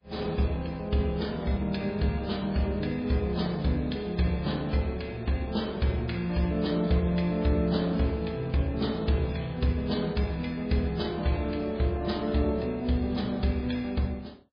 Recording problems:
lossy compression; MP3, log-spectral distance 3 dB, nothing above 5 kHz

